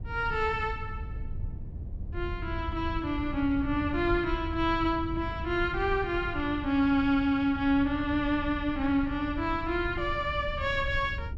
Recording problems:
rumble; below 100 Hz, SNR 10 dB

